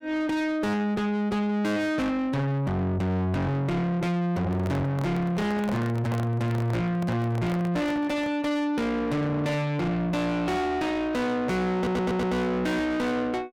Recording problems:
distortion; soft clipping, signal-to-distortion ratio 7 dB
handling noise; from 4.5 to 8.5 s; peak -1 dB vs average level
stutter; at 12 s

